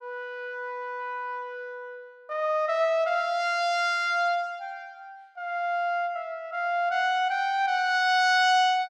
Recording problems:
none

